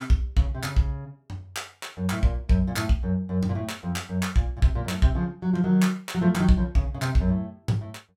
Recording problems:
none

